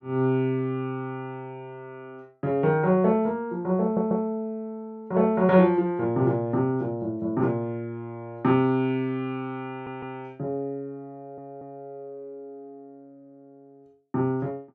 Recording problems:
stutter; at 4 s, at 9.5 s and at 11 s

